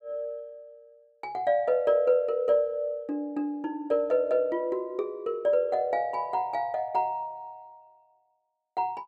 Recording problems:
none

